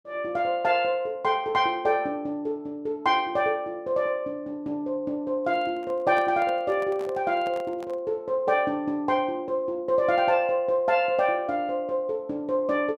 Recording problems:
microphone handling noise; from 5.5 to 8 s; peak -10 dB vs average level

